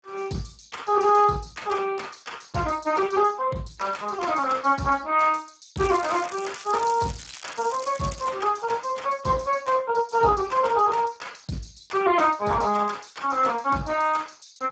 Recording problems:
codec artefacts; Speex, log-spectral distance 7 dB, nothing above 7.6 kHz
crackle; from 6 to 8.5 s; loose cable, SNR 16 dB

